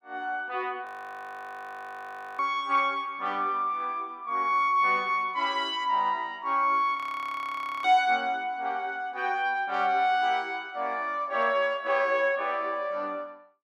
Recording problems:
audio freezing; at 1 s for 1.5 s and at 7 s for 1 s

